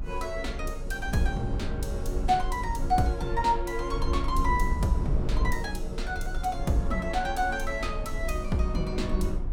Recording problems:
rumble; below 68 Hz, SNR 3 dB

